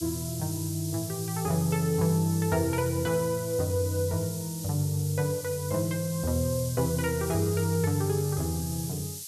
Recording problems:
background hiss; SNR 9 dB

